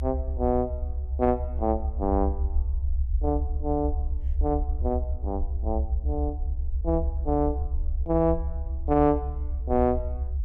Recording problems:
rumble; below 70 Hz, strongest tone 66 Hz, SNR 2 dB

